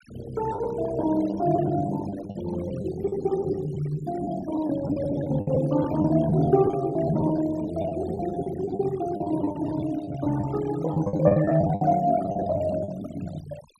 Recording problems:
noise reduction artefacts; signal-to-artefact ratio 16 dB
packet loss; 12% of the sound replaced, filled with the last packet

